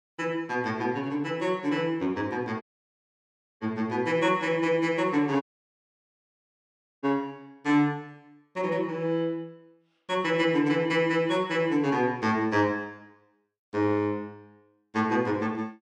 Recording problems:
dropout; at 2.5 s for 1 s and at 5.5 s for 1.5 s

